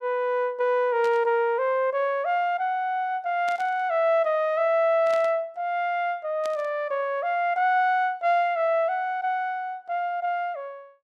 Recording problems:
burst of static; 4 times, first at 1 s; peak -12 dB vs average level

